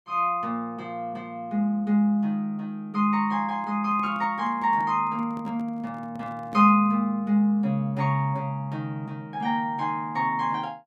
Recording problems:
microphone handling noise; from 3.5 to 7 s; peak -12 dB vs average level

